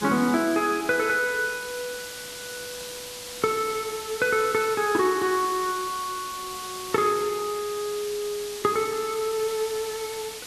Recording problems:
background hiss; slope +1 dB per octave, SNR 10 dB

